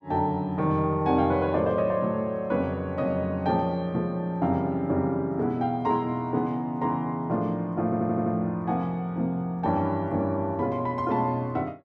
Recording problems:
stutter; at 8 s

